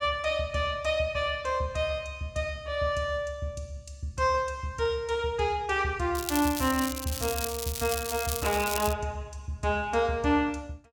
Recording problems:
crackle; from 6 to 9 s; loose cable, SNR 5 dB

